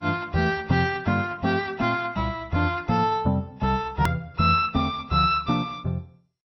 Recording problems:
codec artefacts; MP2, then AAC, log-spectral distance 3 dB, nothing above 20.1 kHz
hard cut with a click; at 4 s

